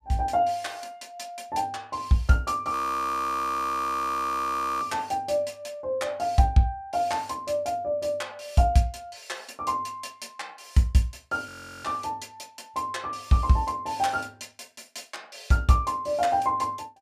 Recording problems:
frozen audio; at 2.5 s for 2 s and at 11 s

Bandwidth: 14.5 kHz